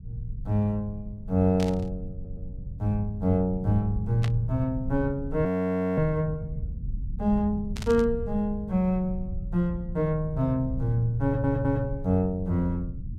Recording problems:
rumble; below 110 Hz, SNR 10 dB
burst of static; at 1.5 s, at 4 s and at 8 s; peak -6 dB vs average level
stutter; at 2 s and at 11 s
frozen audio; at 5.5 s for 0.5 s

